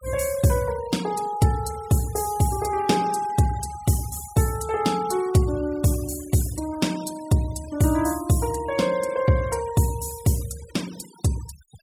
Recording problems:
denoising artefacts; signal-to-artefact ratio 19 dB

